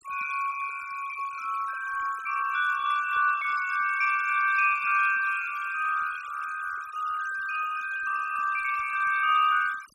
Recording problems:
noise reduction artefacts; signal-to-artefact ratio 16 dB

